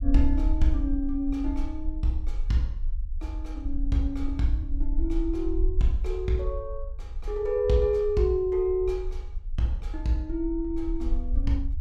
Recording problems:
rumble; below 48 Hz, SNR 5 dB

